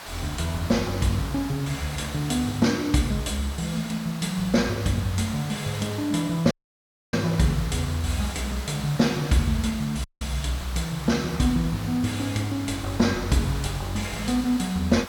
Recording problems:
background hiss; SNR 12 dB
audio cutting out; at 6.5 s for 0.5 s and at 10 s

